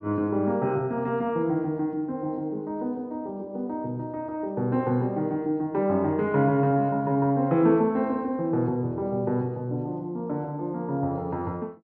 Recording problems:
treble missing; nothing above 5.7 kHz

